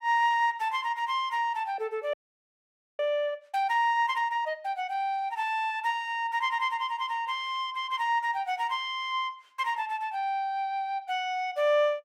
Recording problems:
audio freezing; at 2 s for 1 s

